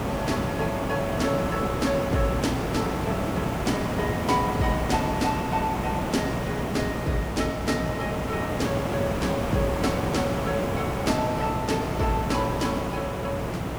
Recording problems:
hum; 60 Hz, harmonics up to 600 Hz, SNR 10 dB
hiss; slope -8 dB per octave, SNR 0 dB

